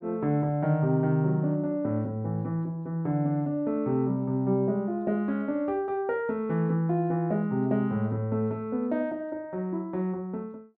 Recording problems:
none

